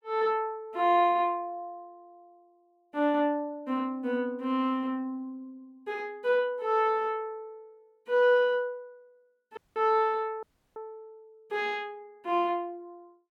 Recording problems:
dropout; at 9.5 s and at 10 s

